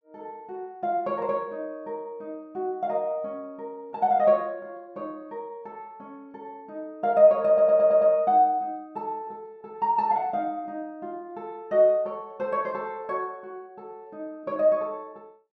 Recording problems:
stutter; at 7.5 s

